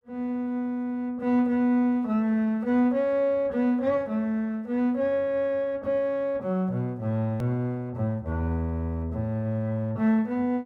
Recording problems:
edit click; at 7.5 s

